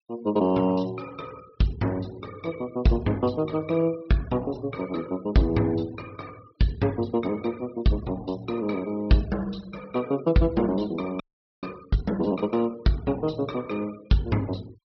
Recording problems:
treble missing; nothing above 5.5 kHz
noise reduction artefacts; signal-to-artefact ratio 23 dB
frozen audio; at 11 s

